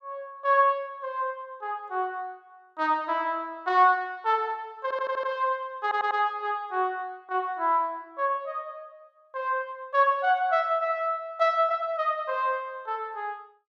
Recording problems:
stutter; at 5 s and at 6 s

